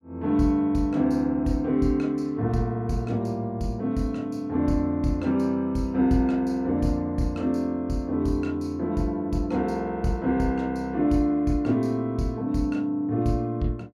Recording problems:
none

